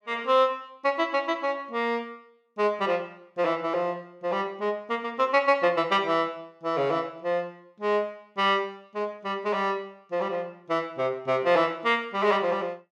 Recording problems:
none

